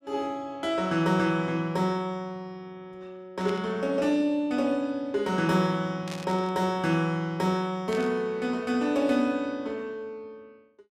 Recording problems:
static burst; at 3.5 s, at 6 s and at 8 s; peak -8 dB vs average level

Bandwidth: 15 kHz